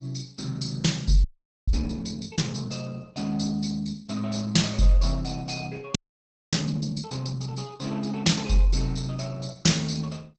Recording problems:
lossy compression; Opus, log-spectral distance 6 dB, nothing above 8 kHz
frozen audio; at 1 s and at 6 s for 0.5 s

